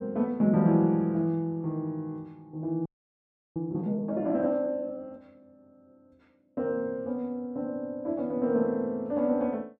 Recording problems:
frozen audio; at 3 s for 0.5 s

